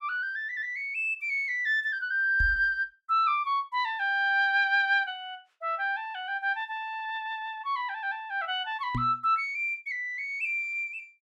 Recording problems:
lost packets; 0.4% of the sound replaced, filled with the last packet
microphone thump; at 2.5 s and at 9 s; peak -1 dB vs average level

